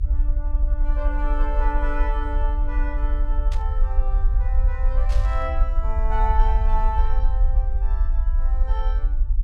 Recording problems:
low-frequency rumble; below 50 Hz, strongest tone 26 Hz, SNR -8 dB
burst of static; at 3.5 s and at 5 s; peak -5 dB vs average level

